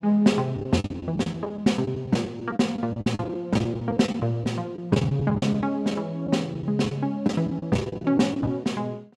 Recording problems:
lost packets; 13% of the sound replaced, filled with the last packet

